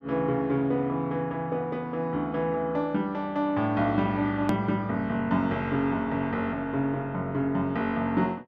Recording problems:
click at an edit; at 4.5 s

